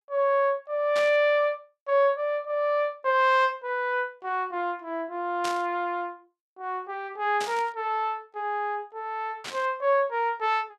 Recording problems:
burst of static; 4 times, first at 1 s; peak -4 dB vs average level

